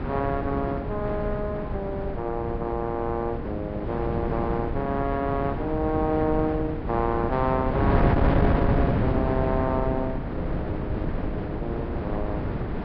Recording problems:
lossy codec; Vorbis, log-spectral distance 2 dB
wind on the microphone; below 370 Hz, SNR -1 dB

